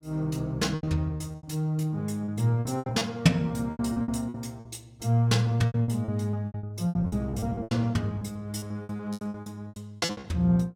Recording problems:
packet loss; 19% of the sound replaced, filled with repeated pitch periods

